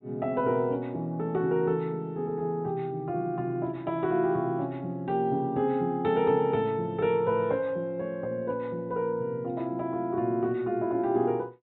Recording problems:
treble missing; nothing above 4 kHz

